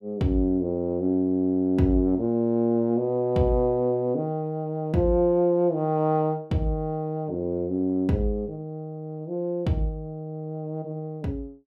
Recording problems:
none

